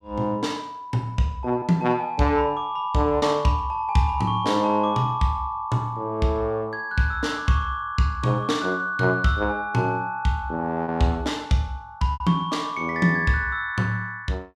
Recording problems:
packet loss; 1.4% of the sound replaced, filled with repeated pitch periods

